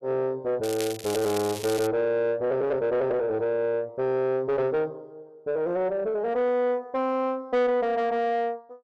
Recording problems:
distorted audio; soft clipping, signal-to-distortion ratio 11 dB
crackling; from 0.5 to 2 s; loose cable, SNR 11 dB

